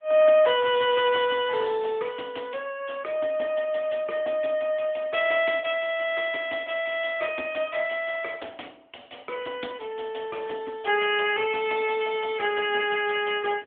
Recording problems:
phone line; 240 Hz to 3.4 kHz, AMR-NB

